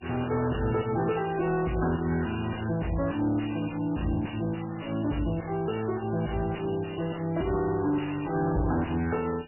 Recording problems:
codec artefacts; MP3, log-spectral distance 9 dB, nothing above 2.9 kHz
distorted audio; soft clipping, signal-to-distortion ratio 6 dB
crackle; from 5 to 6.5 s; loose cable, SNR 27 dB

